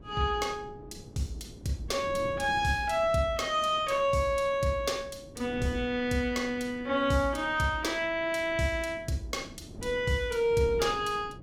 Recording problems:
wind noise; below 320 Hz, SNR 17 dB

